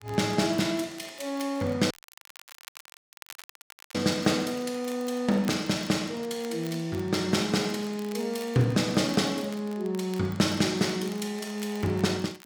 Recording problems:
crackling; vinyl, SNR 21 dB
audio cutting out; at 2 s for 2 s

